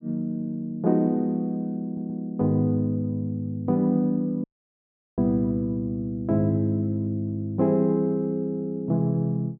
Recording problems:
stutter; at 2 s
audio cutting out; at 4.5 s for 0.5 s

